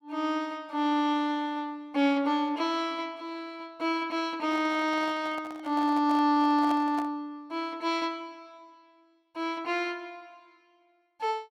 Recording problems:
handling noise; from 4.5 to 7 s; peak -5 dB vs average level

